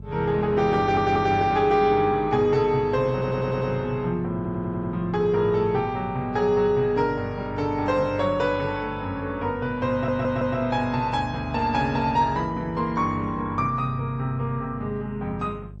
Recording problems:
lossy codec; MP2, then AAC, log-spectral distance 2 dB
hum; 50 Hz, harmonics up to 450 Hz, SNR 16 dB
stutter; 4 times, first at 1 s

